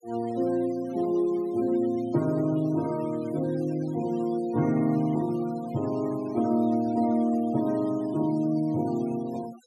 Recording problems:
denoising artefacts; signal-to-artefact ratio 22 dB

